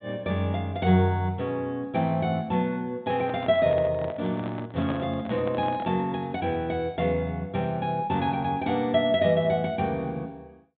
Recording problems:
treble cut off; nothing above 4 kHz
microphone handling noise; from 3 to 6 s; peak -4 dB vs average level

